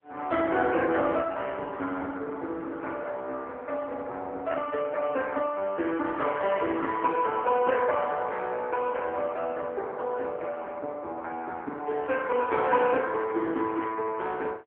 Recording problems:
telephone audio; 280 Hz to 3.4 kHz, AMR-NB

